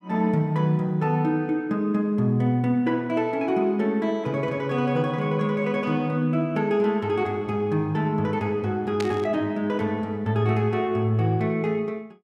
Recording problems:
static burst; at 9 s; peak -5 dB vs average level

